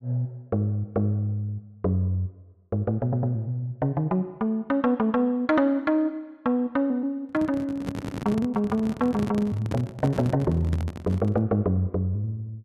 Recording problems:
audio stuttering; at 3 s and at 8 s
microphone handling noise; from 7.5 to 11 s; peak -1 dB vs average level

